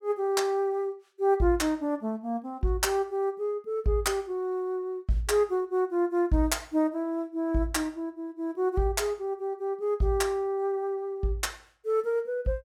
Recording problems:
none

